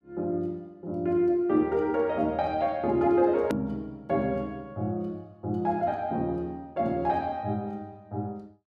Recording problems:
edit click; at 3.5 s

